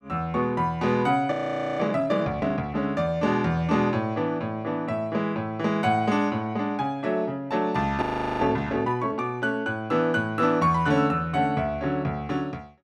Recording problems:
frozen audio; at 1.5 s and at 8 s

